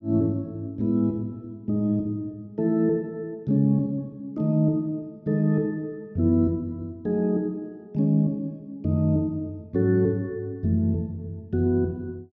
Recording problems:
none

